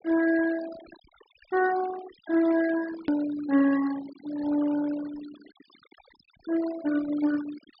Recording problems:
treble missing; nothing above 5.5 kHz
denoising artefacts; signal-to-artefact ratio 15 dB
hard cut with a click; at 3 s

